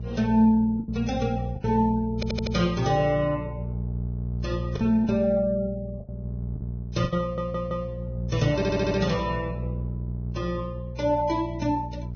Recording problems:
lossy codec; Vorbis, log-spectral distance 2 dB, nothing above 6.3 kHz
electrical hum; 60 Hz, harmonics up to 420 Hz, SNR 8 dB
lost packets; 4% of the sound replaced, filled with the last packet
stutter; at 2 s, at 7 s and at 8.5 s

